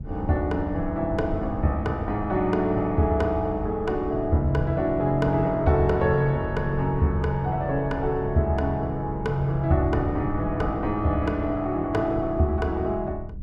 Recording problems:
wind on the microphone; below 120 Hz, SNR 11 dB

